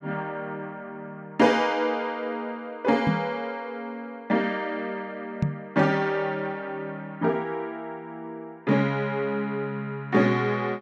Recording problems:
knock on the microphone; at 3 s and at 5.5 s; peak +6 dB vs average level

